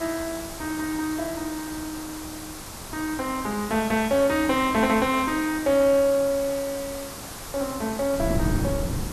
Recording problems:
background hiss; SNR 12 dB
wind noise; below 220 Hz, SNR 12 dB

